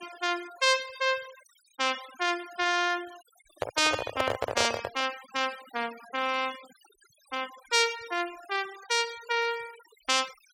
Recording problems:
noise reduction artefacts; signal-to-artefact ratio 18 dB
microphone handling noise; from 3.5 to 5 s; peak +4 dB vs average level

